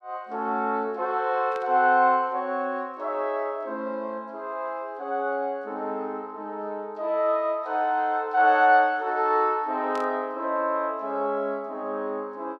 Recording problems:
static burst; at 1.5 s and at 10 s; peak -14 dB vs average level

